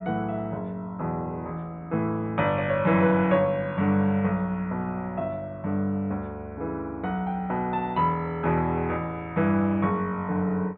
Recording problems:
treble missing; nothing above 4 kHz

